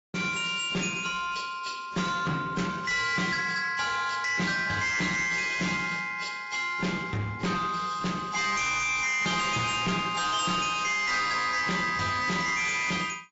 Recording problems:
lossy codec; AAC, log-spectral distance 5 dB, nothing above 7.6 kHz
distorted audio; soft clipping, signal-to-distortion ratio 7 dB

